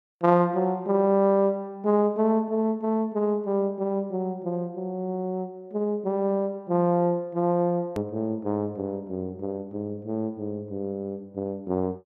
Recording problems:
hard cut with a click; at 8 s

